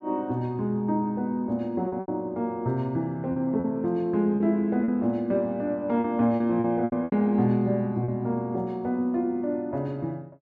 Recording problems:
lost packets; 6% of the sound replaced, filled with repeated pitch periods

